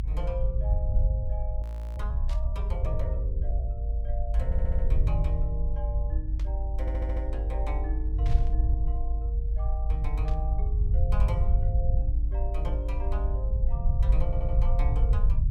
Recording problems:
rumble; below 62 Hz, SNR -12 dB
audio freezing; at 1.5 s
burst of static; 4 times, first at 2.5 s; peak -3 dB vs average level
stutter; at 4.5 s, at 7 s and at 14 s

